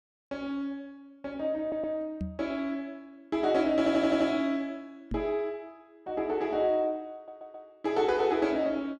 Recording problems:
stutter; at 1.5 s, at 4 s and at 7 s
microphone bump; at 2 s and at 5 s; peak -2 dB vs average level

